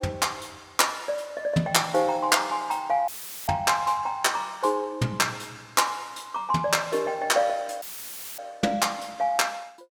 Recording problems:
audio cutting out; at 3 s and at 8 s for 0.5 s; filled with static

